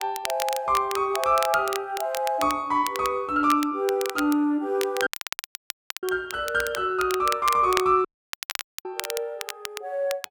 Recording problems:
crackle; vinyl, SNR 10 dB
audio cutting out; at 5 s for 1 s and at 8 s for 1 s

